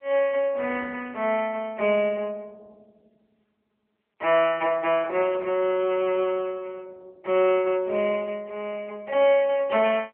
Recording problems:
telephone audio; 320 Hz to 3.1 kHz, AMR-NB

